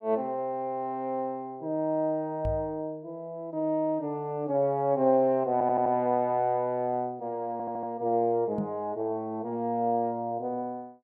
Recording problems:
microphone bump; at 2.5 s and at 8.5 s; peak 0 dB vs average level
audio stuttering; at 5.5 s and at 7.5 s

